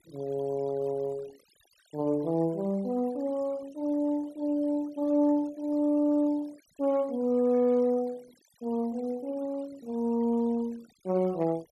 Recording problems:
noise reduction artefacts; signal-to-artefact ratio 26 dB

